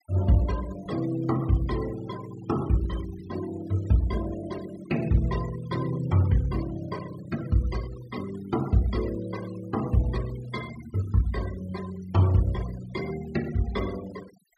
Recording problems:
noise reduction artefacts; signal-to-artefact ratio 17 dB

